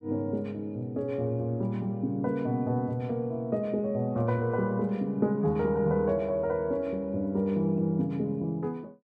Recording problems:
none

